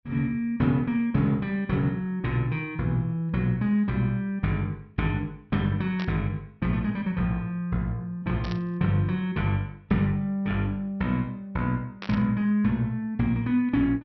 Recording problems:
low-pass filter; nothing above 5.8 kHz
static burst; at 6 s, at 8.5 s and at 12 s; peak -7 dB vs average level

